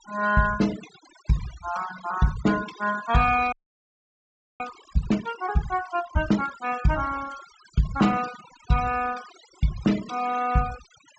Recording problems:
low-pass filter; nothing above 8 kHz
noise reduction artefacts; signal-to-artefact ratio 15 dB
audio freezing; at 3.5 s for 1 s

